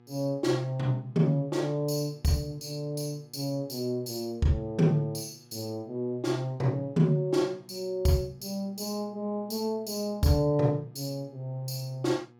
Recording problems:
hum; 60 Hz, harmonics up to 1.7 kHz, SNR 28 dB

